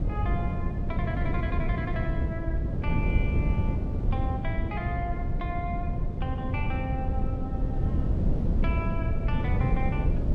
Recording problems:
wind noise; below 150 Hz, SNR -8 dB

